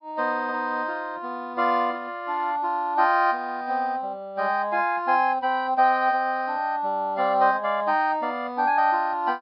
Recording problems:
low-pass filter; nothing above 5.5 kHz

